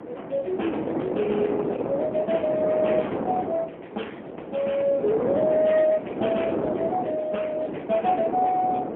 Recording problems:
telephone audio; 220 Hz to 3.1 kHz, AMR-NB, then MP3
wind on the microphone; below 610 Hz, SNR 4 dB

